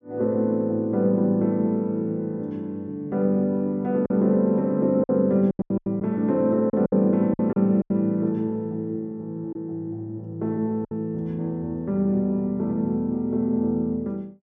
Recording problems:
lost packets; 5% of the sound replaced, filled with silence

